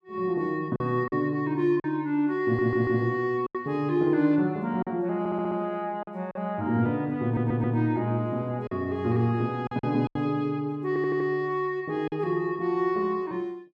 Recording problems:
lost packets; 5% of the sound replaced, filled with silence
audio stuttering; 4 times, first at 2.5 s

